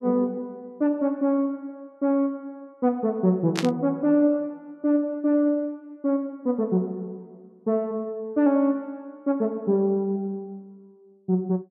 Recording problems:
burst of static; at 3.5 s; peak +2 dB vs average level

